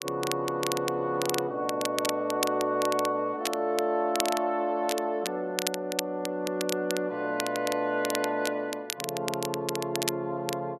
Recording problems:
crackling; vinyl, SNR 6 dB

